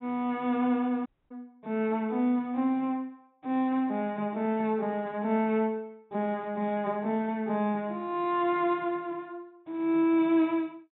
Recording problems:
low-pass filter; nothing above 3.9 kHz
audio cutting out; at 1 s

